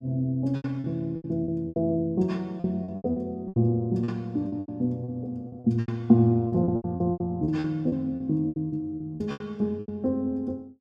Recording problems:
packet loss; 16% of the sound replaced, filled with repeated pitch periods

